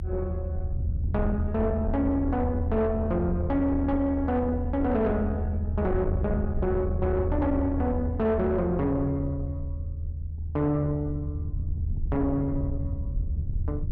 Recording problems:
distortion; soft clipping, signal-to-distortion ratio 11 dB
rumble; below 84 Hz, strongest tone 78 Hz, SNR 4 dB

